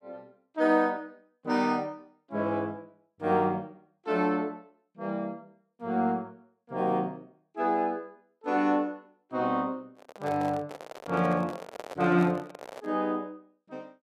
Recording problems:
microphone handling noise; from 10 to 13 s; peak -6 dB vs average level

